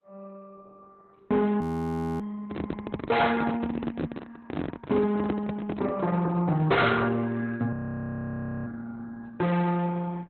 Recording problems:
lossy compression; Opus, log-spectral distance 3 dB, nothing above 13.1 kHz
distortion; hard clipping, signal-to-distortion ratio 7 dB
frozen audio; at 1.5 s for 0.5 s and at 7.5 s for 1 s
microphone handling noise; from 2.5 to 6 s; peak +2 dB vs average level

